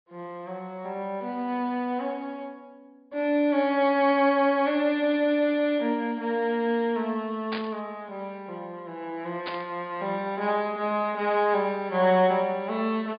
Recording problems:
treble cut off; nothing above 4.9 kHz
burst of static; at 7.5 s and at 9.5 s; peak -5 dB vs average level

